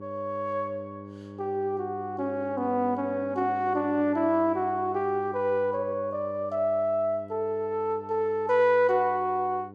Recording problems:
hum; 50 Hz, harmonics up to 1 kHz, SNR 16 dB

